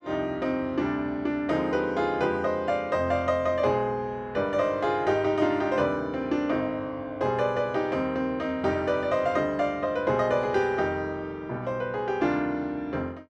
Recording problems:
none

